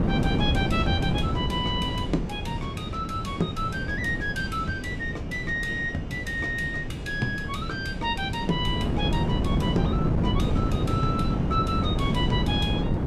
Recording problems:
wind on the microphone; below 280 Hz, SNR -1 dB

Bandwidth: 15 kHz